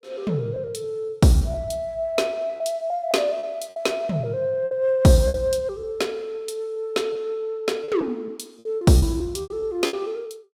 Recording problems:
packet loss; 8% of the sound replaced, filled with repeated pitch periods

